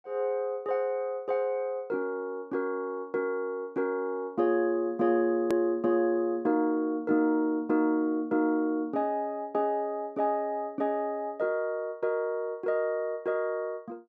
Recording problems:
hard cut with a click; at 5.5 s

